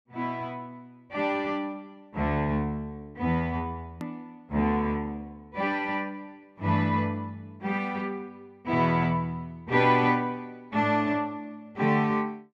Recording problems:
click at an edit; at 4 s

